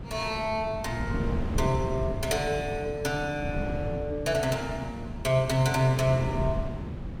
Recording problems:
wind on the microphone; below 220 Hz, SNR 6 dB

